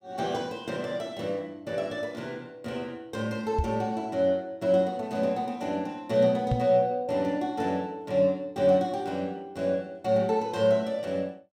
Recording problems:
knock on the microphone; at 3.5 s and at 6.5 s; peak +4 dB vs average level

